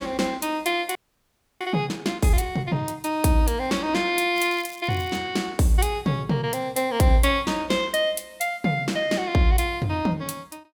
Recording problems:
audio freezing; at 1 s for 0.5 s
crackling; at 4.5 s; loose cable, SNR 21 dB

